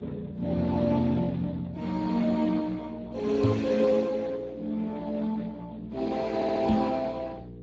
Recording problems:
codec artefacts; Speex, log-spectral distance 4 dB
hum; 60 Hz, harmonics up to 480 Hz, SNR 17 dB
microphone thump; at 3.5 s and at 6.5 s; peak +7 dB vs average level
stutter; at 6.5 s

